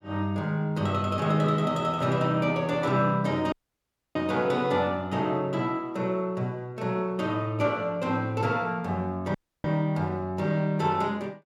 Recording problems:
audio cutting out; at 3.5 s for 0.5 s and at 9.5 s

